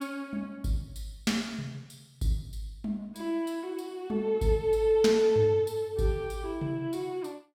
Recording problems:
none

